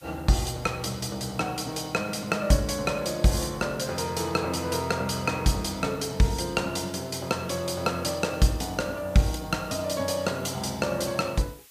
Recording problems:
hiss; slope +3 dB per octave, SNR 24 dB

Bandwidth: 15 kHz